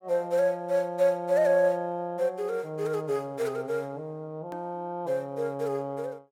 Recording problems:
edit click; at 4.5 s

